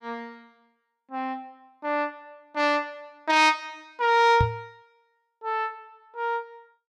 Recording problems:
microphone thump; at 4.5 s; peak +4 dB vs average level

